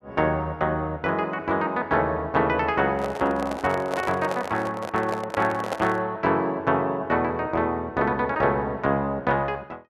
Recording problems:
microphone handling noise; from 3 to 6 s; peak 0 dB vs average level

